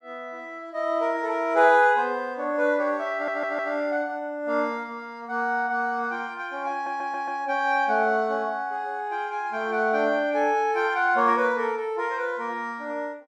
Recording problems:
audio stuttering; at 3 s and at 6.5 s

